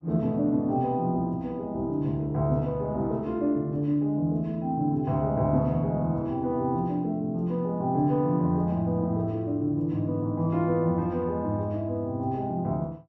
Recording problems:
none

